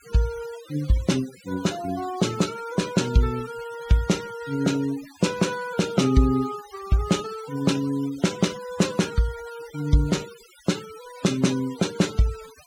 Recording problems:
noise reduction artefacts; signal-to-artefact ratio 16 dB

